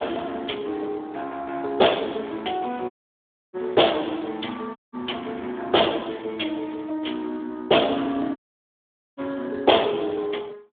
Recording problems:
telephone audio; 220 Hz to 3.6 kHz, Speex
dropout; at 3 s for 0.5 s, at 5 s and at 8.5 s for 1 s

